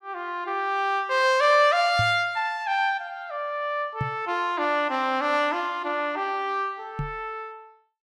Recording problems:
knock on the microphone; at 2 s, at 4 s and at 7 s; peak -1 dB vs average level

